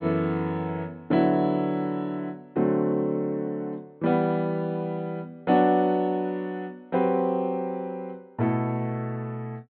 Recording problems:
treble missing; nothing above 4.4 kHz

